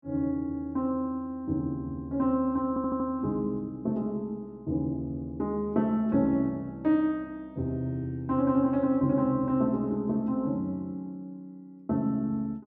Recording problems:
audio stuttering; at 2.5 s

